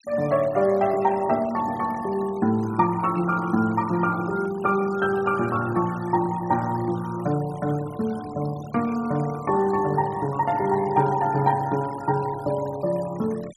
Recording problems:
noise reduction artefacts; signal-to-artefact ratio 20 dB

